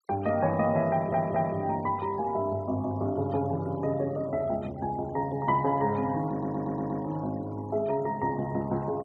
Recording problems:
denoising artefacts; signal-to-artefact ratio 24 dB
stutter; at 1 s and at 6.5 s

